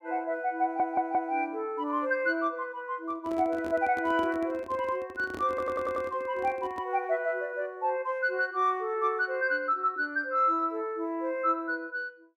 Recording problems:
audio stuttering; at 0.5 s and at 5.5 s
handling noise; from 3 to 7 s; peak -7 dB vs average level

